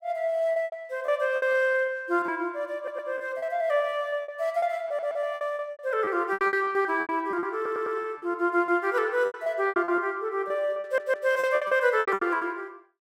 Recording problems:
packet loss; 17% of the sound replaced, filled with repeated pitch periods
audio stuttering; 4 times, first at 3 s

